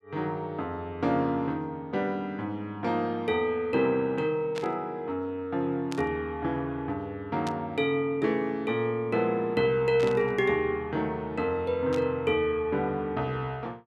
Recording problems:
burst of static; 5 times, first at 4.5 s; peak -5 dB vs average level

